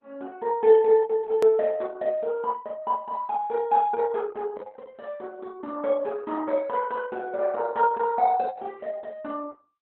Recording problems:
codec artefacts; Opus, log-spectral distance 3 dB, nothing above 13.3 kHz
hard cut with a click; at 1.5 s

